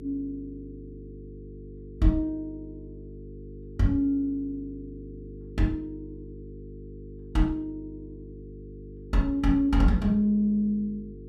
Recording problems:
electrical hum; 50 Hz, harmonics up to 450 Hz, SNR 16 dB

